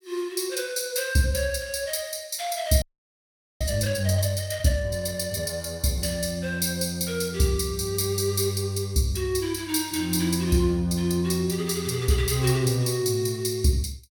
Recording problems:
frozen audio; at 3 s for 1 s

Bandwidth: 17.5 kHz